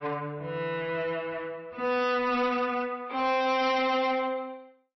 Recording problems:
lossy codec; MP3, log-spectral distance 2 dB, nothing above 5.5 kHz
distorted audio; hard clipping, uneven, signal-to-distortion ratio 10 dB

